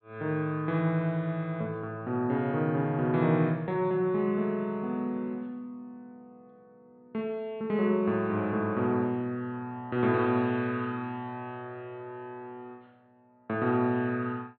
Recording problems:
low-pass filter; nothing above 4.3 kHz

